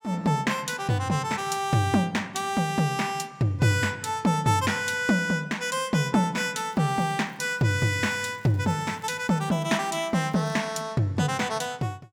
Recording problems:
crackling; from 6.5 to 11 s; loose cable, SNR 30 dB

